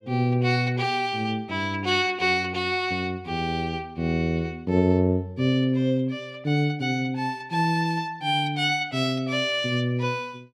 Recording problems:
none

